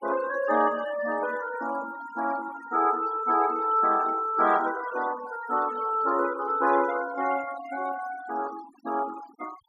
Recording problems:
noise reduction artefacts; signal-to-artefact ratio 15 dB

